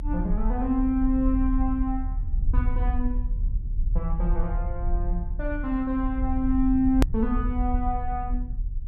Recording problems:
low-frequency rumble; below 56 Hz, strongest tone 38 Hz, SNR 2 dB
edit click; at 7 s

